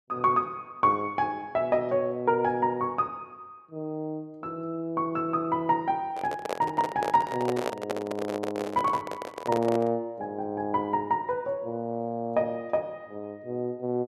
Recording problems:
microphone handling noise; from 6 to 10 s; peak +3 dB vs average level

